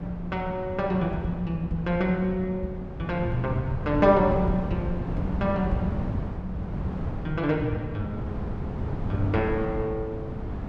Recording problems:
wind noise; below 230 Hz, SNR 5 dB

